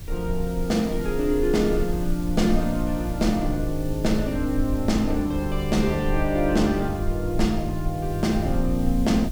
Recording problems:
background hiss; SNR 20 dB
rumble; below 52 Hz, strongest tone 20 Hz, SNR 9 dB

